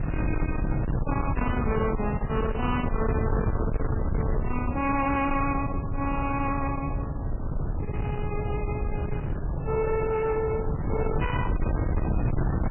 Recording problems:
lossy codec; MP3, log-spectral distance 3 dB, nothing above 2.5 kHz
distortion; soft clipping, signal-to-distortion ratio 7 dB
wind noise; below 230 Hz, SNR 1 dB

